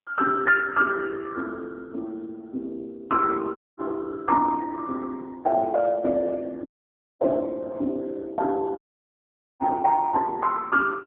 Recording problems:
telephone audio; 240 Hz to 2.8 kHz, AMR-NB
audio cutting out; at 3.5 s, at 6.5 s for 0.5 s and at 9 s for 1 s

